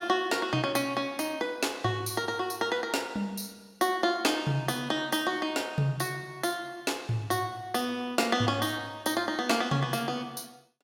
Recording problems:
none

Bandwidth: 16.5 kHz